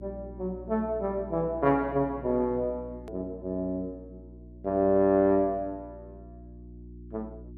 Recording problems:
electrical hum; 60 Hz, harmonics up to 360 Hz, SNR 18 dB
click at an edit; at 3 s

